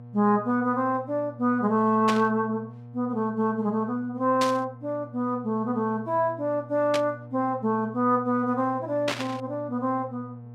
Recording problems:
hum; 60 Hz, harmonics up to 720 Hz, SNR 17 dB
burst of static; 4 times, first at 2 s; peak +1 dB vs average level

